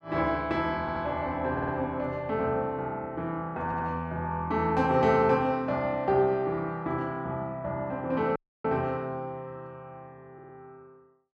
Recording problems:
stutter; 4 times, first at 1 s
audio cutting out; at 8.5 s

